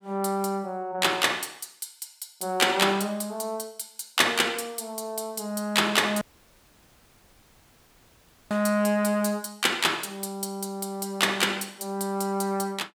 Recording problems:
dropout; at 6 s for 2.5 s

